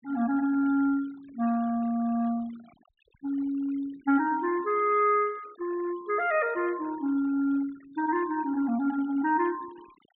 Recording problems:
treble cut off; nothing above 4 kHz
denoising artefacts; signal-to-artefact ratio 25 dB

